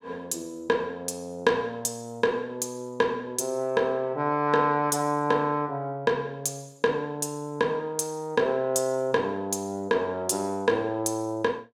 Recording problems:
none

